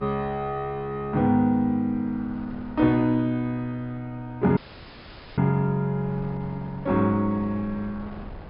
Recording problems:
treble cut off; nothing above 5.5 kHz
wind noise; below 450 Hz, SNR 20 dB
dropout; at 4.5 s for 1 s

